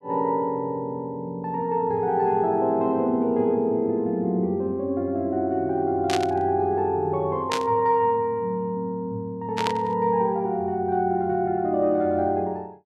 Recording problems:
burst of static; at 6 s, at 7.5 s and at 9.5 s; peak +1 dB vs average level

